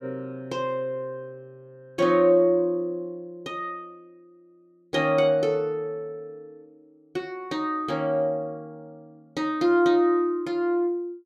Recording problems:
none

